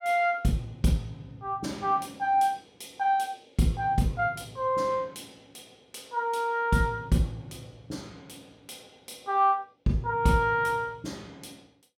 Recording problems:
none

